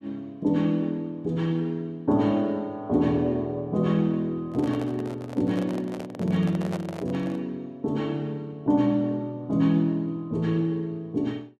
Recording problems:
handling noise; from 4.5 to 7.5 s; peak -5 dB vs average level

